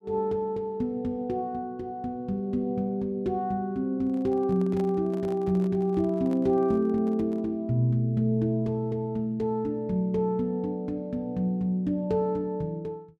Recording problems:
handling noise; from 4 to 7.5 s; peak -10 dB vs average level

